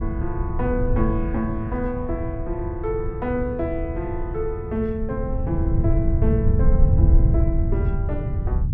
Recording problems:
rumble; below 110 Hz, SNR -3 dB

